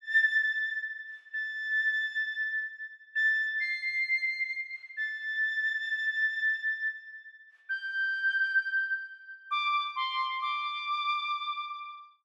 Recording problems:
none

